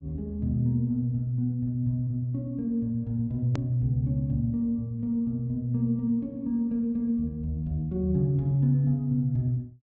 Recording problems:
treble missing; nothing above 8 kHz
edit click; at 3.5 s

